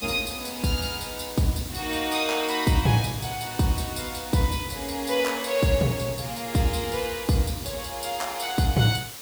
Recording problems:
hiss; slope -1 dB per octave, SNR 11 dB

